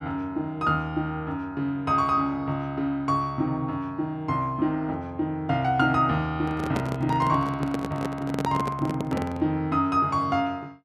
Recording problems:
handling noise; from 6.5 to 9.5 s; peak +1 dB vs average level

